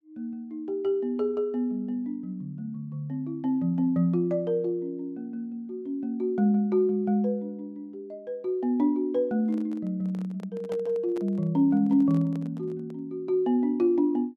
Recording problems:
microphone handling noise; from 9.5 to 13 s; peak -10 dB vs average level

